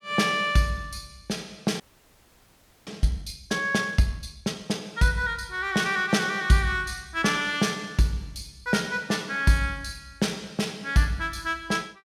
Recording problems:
frozen audio; at 2 s for 1 s

